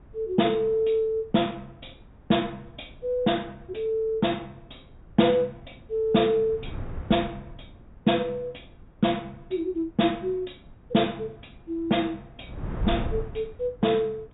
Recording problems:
treble cut off; nothing above 3.8 kHz
wind noise; below 180 Hz, SNR 16 dB

